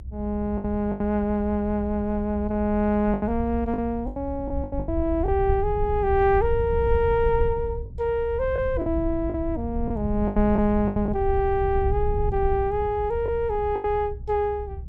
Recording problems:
rumble; below 78 Hz, SNR 8 dB
packet loss; 7% of the sound replaced, filled with the last packet

